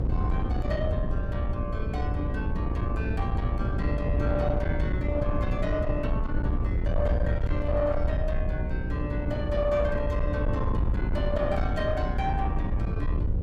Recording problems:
distortion; soft clipping, signal-to-distortion ratio 12 dB
hum; 60 Hz, harmonics up to 540 Hz, SNR 3 dB
rumble; below 76 Hz, SNR 3 dB
wind on the microphone; below 140 Hz, SNR 0 dB

